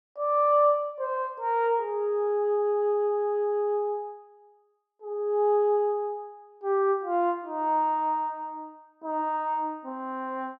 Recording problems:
none

